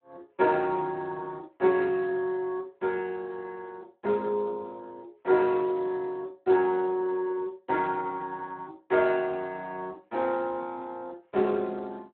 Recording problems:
telephone audio; 300 Hz to 2.6 kHz, Speex

